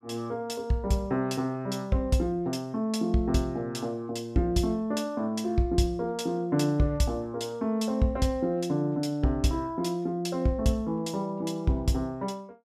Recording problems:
none

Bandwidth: 14.5 kHz